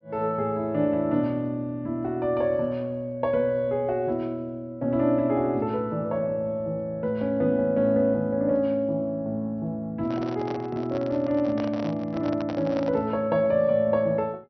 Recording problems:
low-pass filter; nothing above 5.9 kHz
microphone handling noise; from 10 to 13 s; peak -5 dB vs average level

